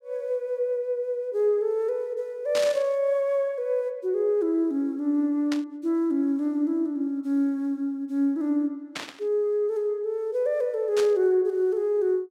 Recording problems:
static burst; 4 times, first at 2.5 s; peak -3 dB vs average level

